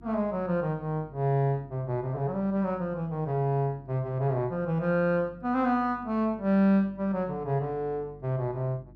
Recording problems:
hum; 50 Hz, harmonics up to 350 Hz, SNR 23 dB

